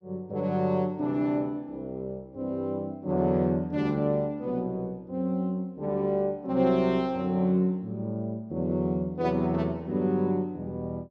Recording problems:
none

